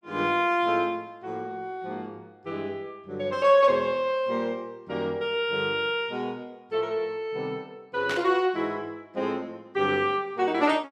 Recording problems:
burst of static; at 8 s; peak -1 dB vs average level

